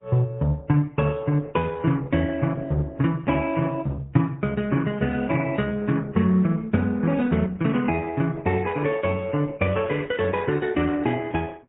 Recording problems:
treble missing; nothing above 4 kHz
codec artefacts; MP3, then Opus, log-spectral distance 3 dB

